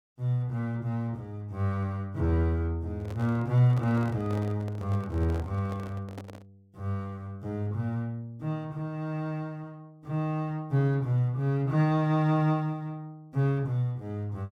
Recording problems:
microphone handling noise; from 3 to 6.5 s; peak -9 dB vs average level

